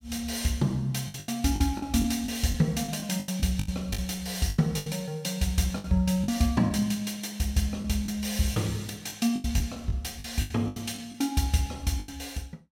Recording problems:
packet loss; 11% of the sound replaced, filled with the last packet

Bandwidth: 16.5 kHz